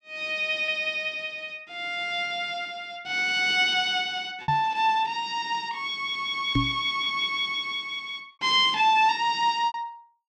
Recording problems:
packet loss; 2% of the sound replaced, filled with repeated pitch periods
microphone thump; at 4.5 s and at 6.5 s; peak +3 dB vs average level

